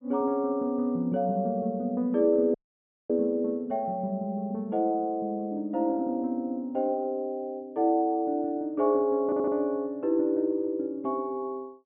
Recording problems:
treble missing; nothing above 3.6 kHz
dropout; at 2.5 s for 0.5 s
audio stuttering; at 9.5 s

